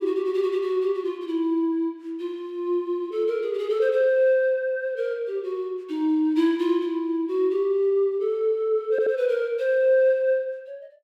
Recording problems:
audio stuttering; at 9 s

